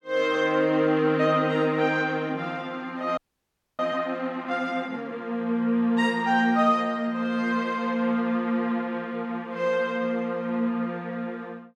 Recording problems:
frozen audio; at 3 s for 0.5 s

